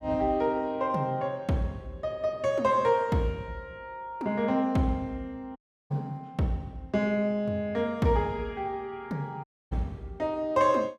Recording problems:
dropout; at 5.5 s and at 9.5 s

